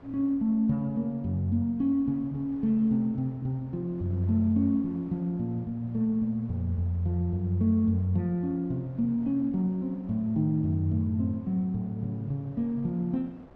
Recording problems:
wind on the microphone; below 680 Hz, SNR 25 dB

